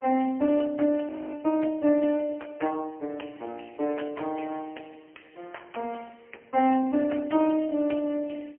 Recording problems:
phone line; 220 Hz to 3.1 kHz, AMR-NB, then MP3
audio freezing; at 1 s

